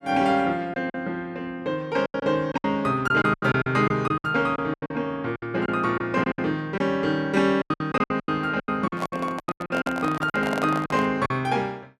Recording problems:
packet loss; 15% of the sound replaced, filled with silence
handling noise; from 9 to 11 s; peak -2 dB vs average level

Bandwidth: 14 kHz